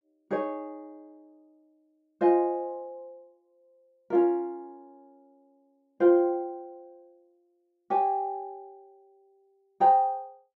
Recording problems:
none

